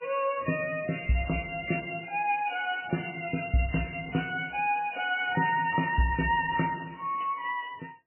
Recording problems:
codec artefacts; MP3, log-spectral distance 7 dB, nothing above 2.5 kHz

